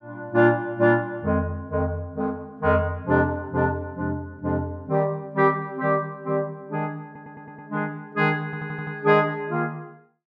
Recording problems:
stutter; at 7 s and at 8.5 s

